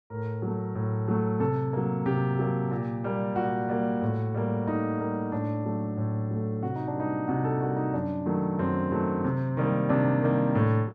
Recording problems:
none

